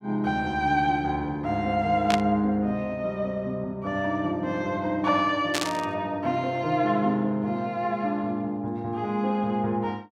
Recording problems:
burst of static; at 2 s and at 5.5 s; peak +3 dB vs average level

